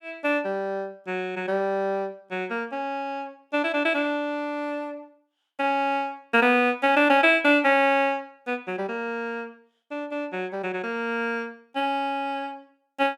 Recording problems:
none

